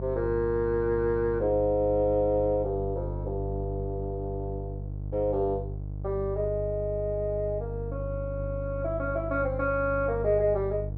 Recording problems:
low-pass filter; nothing above 5.5 kHz
hum; 50 Hz, harmonics up to 500 Hz, SNR 7 dB

